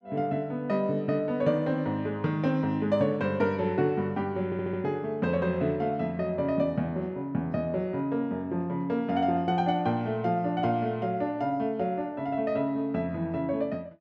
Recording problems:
audio stuttering; at 4.5 s

